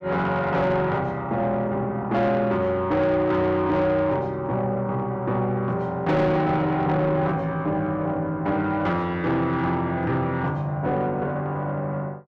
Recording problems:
distortion; soft clipping, signal-to-distortion ratio 11 dB

